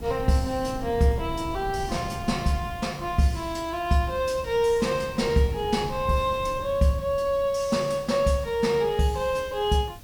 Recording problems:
hiss; slope +1 dB per octave, SNR 25 dB
wind on the microphone; below 180 Hz, SNR 15 dB

